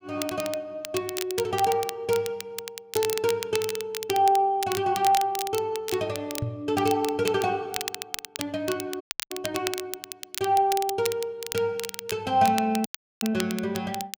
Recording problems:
crackle; vinyl, SNR 9 dB
knock on the microphone; at 6.5 s; peak +1 dB vs average level
audio cutting out; at 9 s and at 13 s

